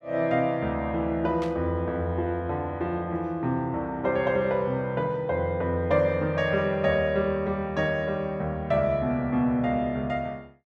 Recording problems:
burst of static; at 1.5 s; peak -10 dB vs average level

